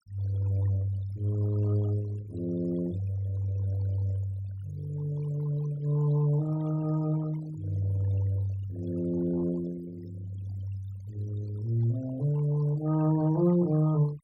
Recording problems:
noise reduction artefacts; signal-to-artefact ratio 20 dB

